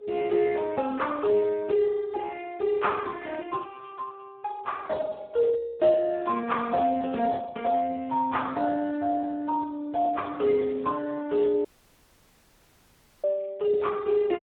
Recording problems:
telephone audio; 190 Hz to 2.8 kHz, Speex
audio cutting out; at 12 s for 1.5 s

